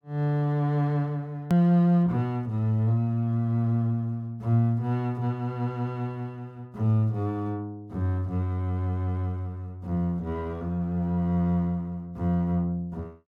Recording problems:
click at an edit; at 1.5 s

